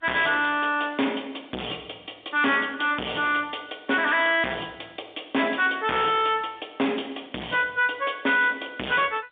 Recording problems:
phone line; 240 Hz to 3.7 kHz, G.711
distortion; hard clipping, signal-to-distortion ratio 4 dB

